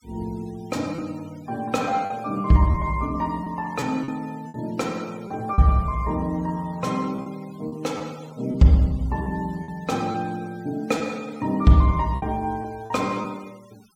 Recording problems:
noise reduction artefacts; signal-to-artefact ratio 25 dB
lost packets; 5% of the sound replaced, filled with repeated pitch periods

